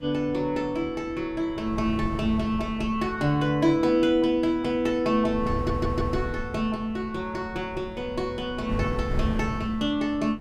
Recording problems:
wind noise; below 150 Hz, SNR 9 dB
audio stuttering; at 5.5 s

